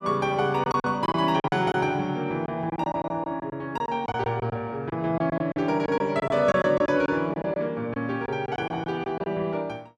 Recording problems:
lost packets; 11% of the sound replaced, filled with silence

